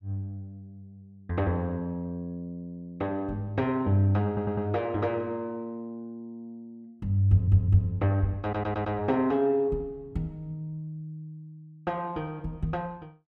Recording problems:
audio stuttering; at 4.5 s, at 7.5 s and at 8.5 s

